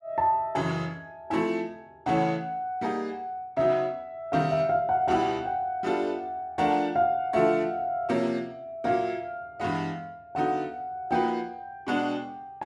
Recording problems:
none

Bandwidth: 12.5 kHz